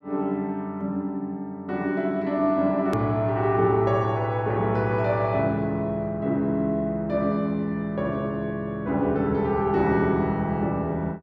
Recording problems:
hard cut with a click; at 3 s

